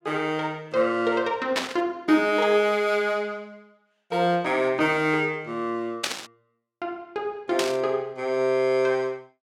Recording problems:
burst of static; at 1.5 s, at 6 s and at 7.5 s; peak +3 dB vs average level

